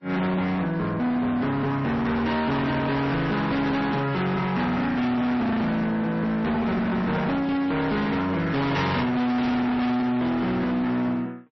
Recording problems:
codec artefacts; MP3, log-spectral distance 2 dB, nothing above 5.7 kHz
distortion; hard clipping, signal-to-distortion ratio 6 dB

